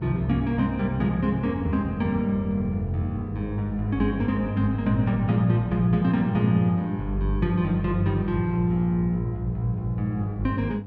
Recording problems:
hum; 50 Hz, harmonics up to 800 Hz, SNR 12 dB

